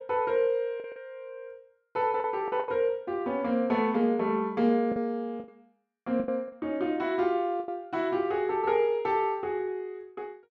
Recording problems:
lost packets; 6% of the sound replaced, filled with the last packet

